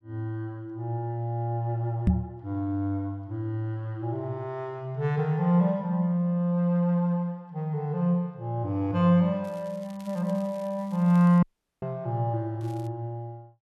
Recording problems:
microphone thump; at 2 s; peak +8 dB vs average level
crackling; from 9.5 to 11 s and at 13 s; loose cable, SNR 28 dB
audio cutting out; at 11 s

